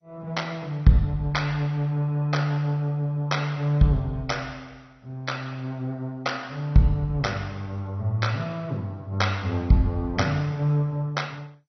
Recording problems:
lossy codec; MP2, log-spectral distance 2 dB, nothing above 6 kHz

